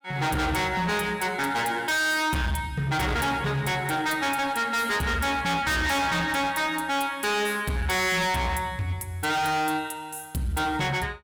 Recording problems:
distorted audio; hard clipping, signal-to-distortion ratio 6 dB

